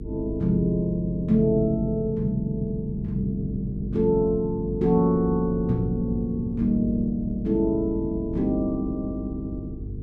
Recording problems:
hum; 50 Hz, harmonics up to 450 Hz, SNR 11 dB
wind noise; below 140 Hz, SNR 14 dB

